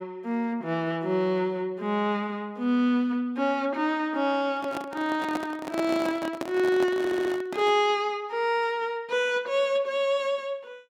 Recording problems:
microphone handling noise; from 4.5 to 8 s; peak -1 dB vs average level
audio stuttering; at 7 s

